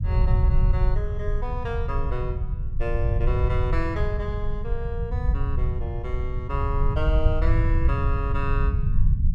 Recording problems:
low-frequency rumble; below 86 Hz, SNR -6 dB

